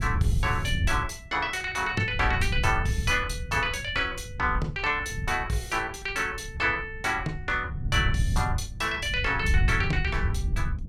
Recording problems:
wind noise; below 110 Hz, SNR 4 dB

